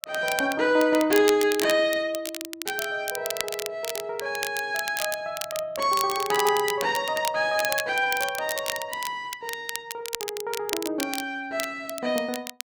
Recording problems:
crackling; vinyl, SNR 7 dB

